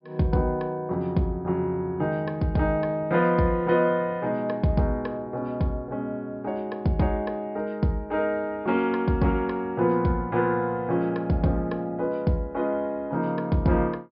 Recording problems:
low-pass filter; nothing above 5.5 kHz

